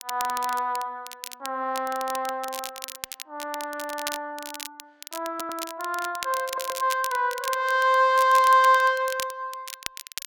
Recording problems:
crackling; vinyl, SNR 13 dB
audio stuttering; at 5.5 s and at 6.5 s

